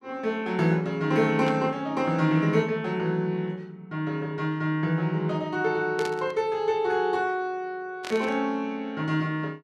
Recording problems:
burst of static; at 1.5 s, at 6 s and at 8 s; peak -5 dB vs average level

